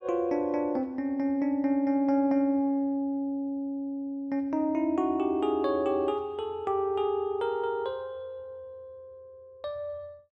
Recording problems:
none

